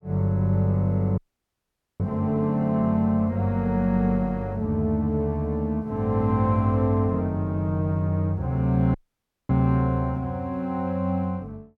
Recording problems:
dropout; at 1 s for 1 s and at 9 s for 0.5 s

